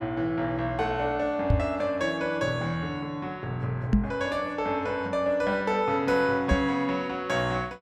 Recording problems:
microphone thump; at 1.5 s, at 4 s and at 6.5 s; peak +8 dB vs average level

